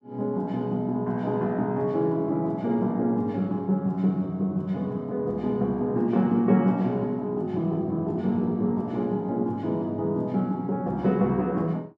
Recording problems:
none

